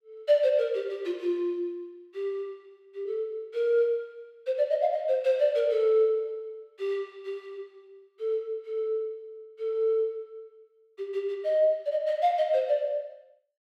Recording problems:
none

